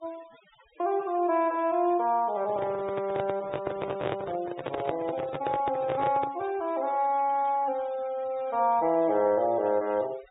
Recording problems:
low-pass filter; nothing above 4 kHz
denoising artefacts; signal-to-artefact ratio 22 dB
handling noise; from 2.5 to 6.5 s; peak -1 dB vs average level

